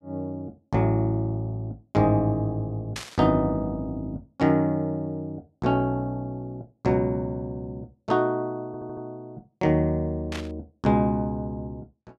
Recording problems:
burst of static; at 3 s and at 10 s; peak -3 dB vs average level
audio stuttering; at 8.5 s

